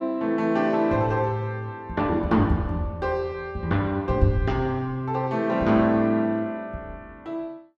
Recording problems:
none

